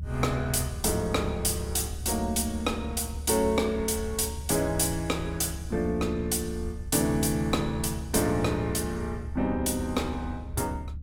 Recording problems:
rumble; below 76 Hz, strongest tone 72 Hz, SNR 9 dB

